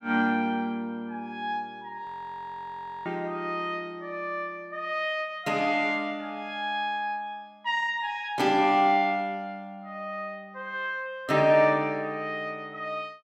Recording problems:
audio freezing; at 2 s for 1 s

